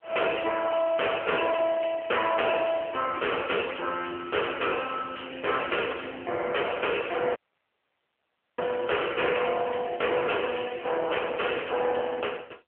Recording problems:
phone line; 340 Hz to 2.6 kHz, AMR-NB
distorted audio; hard clipping, uneven, signal-to-distortion ratio 8 dB
audio cutting out; at 7.5 s for 1 s

